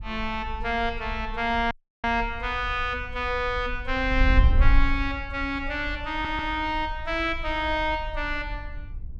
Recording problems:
wind on the microphone; below 58 Hz, SNR 5 dB
audio cutting out; at 1.5 s
audio stuttering; at 6 s

